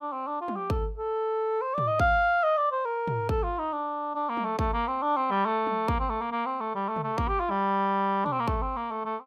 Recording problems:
none

